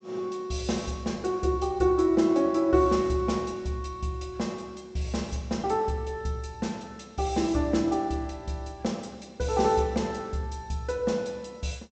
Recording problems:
treble cut off; nothing above 8 kHz

